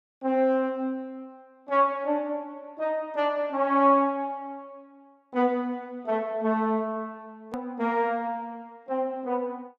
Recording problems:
click at an edit; at 7.5 s

